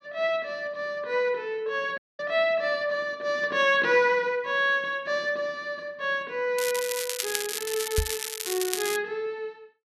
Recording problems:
audio cutting out; at 2 s
crackle; from 6.5 to 9 s; loose cable, SNR 4 dB
microphone thump; at 8 s; peak +4 dB vs average level

